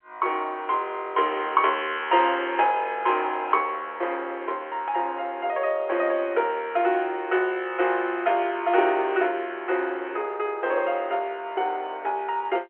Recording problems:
telephone audio; 300 Hz to 3.3 kHz, G.711

